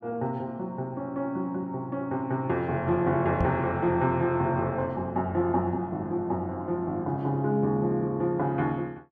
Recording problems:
knock on the microphone; at 3.5 s; peak +3 dB vs average level

